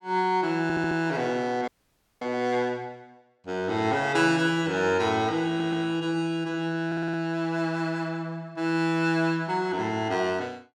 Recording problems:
stutter; at 0.5 s, at 5.5 s and at 7 s
audio freezing; at 1.5 s for 0.5 s

